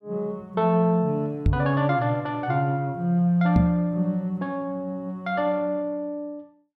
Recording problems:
knock on the microphone; at 1.5 s and at 3.5 s; peak +6 dB vs average level

